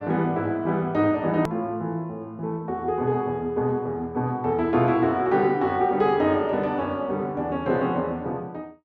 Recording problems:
edit click; at 1.5 s

